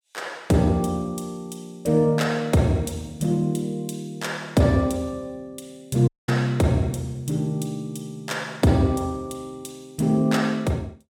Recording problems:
dropout; at 6 s

